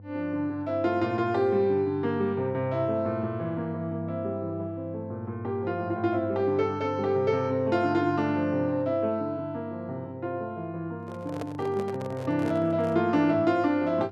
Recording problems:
electrical hum; 50 Hz, harmonics up to 500 Hz, SNR 15 dB
handling noise; from 11 to 13 s; peak -6 dB vs average level

